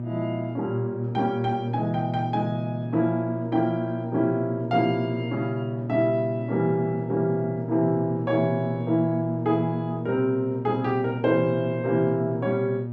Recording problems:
hum; 60 Hz, harmonics up to 600 Hz, SNR 6 dB

